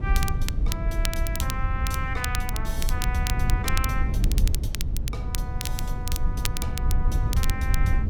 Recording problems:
hum; 60 Hz, harmonics up to 300 Hz, SNR 20 dB
rumble; below 82 Hz, SNR -6 dB
crackling; vinyl, SNR 2 dB

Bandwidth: 17 kHz